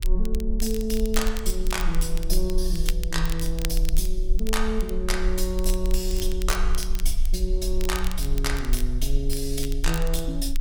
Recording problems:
low-frequency rumble; below 38 Hz, strongest tone 20 Hz, SNR 0 dB
crackling; vinyl, SNR 10 dB

